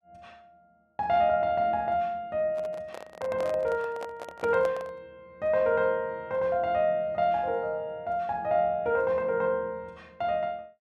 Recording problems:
microphone handling noise; from 2.5 to 5 s; peak -5 dB vs average level

